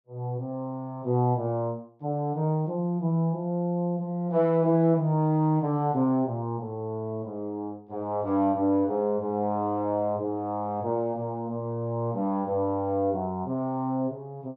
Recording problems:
none

